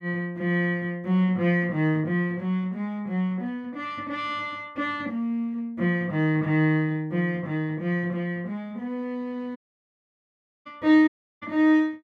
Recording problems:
dropout; at 9.5 s for 1 s and at 11 s

